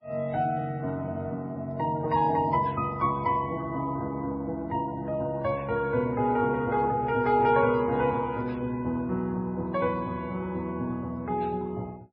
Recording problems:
lossy codec; Vorbis, then MP3, log-spectral distance 2 dB, nothing above 4.8 kHz

